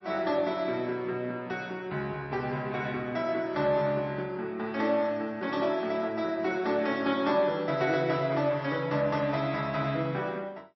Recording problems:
lossy codec; MP3, log-spectral distance 2 dB, nothing above 4.8 kHz

